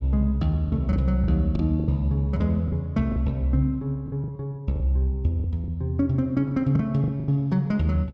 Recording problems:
packet loss; 8% of the sound replaced, filled with the last packet

